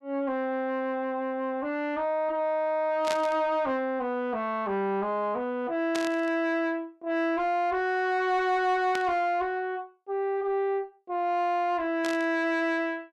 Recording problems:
distorted audio; soft clipping, signal-to-distortion ratio 10 dB
burst of static; 4 times, first at 3 s; peak -1 dB vs average level

